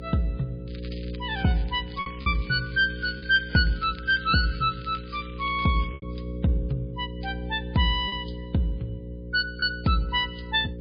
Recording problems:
codec artefacts; MP3, log-spectral distance 4 dB, nothing above 4.5 kHz
hum; 60 Hz, harmonics up to 540 Hz, SNR 11 dB
lost packets; 3% of the sound replaced, filled with repeated pitch periods
crackle; from 0.5 to 6 s; loose cable, SNR 21 dB

